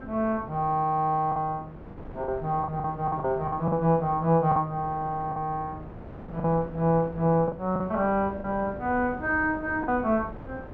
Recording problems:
wind noise; below 500 Hz, SNR 16 dB
lost packets; 6% of the sound replaced, filled with the last packet

